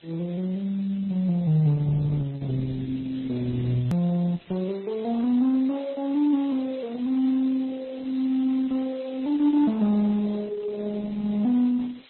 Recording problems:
lossy codec; Opus, then MP3, log-spectral distance 10 dB, nothing above 13.1 kHz
hiss; SNR 26 dB
edit click; at 4 s

